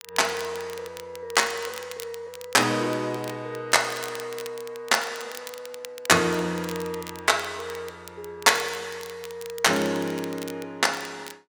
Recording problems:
crackle; vinyl, SNR 17 dB

